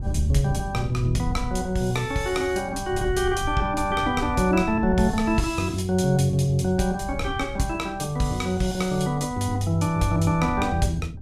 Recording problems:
wind on the microphone; below 110 Hz, SNR 11 dB

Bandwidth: 14.5 kHz